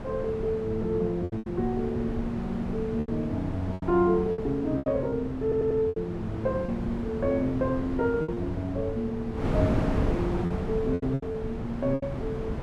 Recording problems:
wind on the microphone; below 370 Hz, SNR 5 dB
lost packets; 8% of the sound replaced, filled with repeated pitch periods
stutter; at 5.5 s

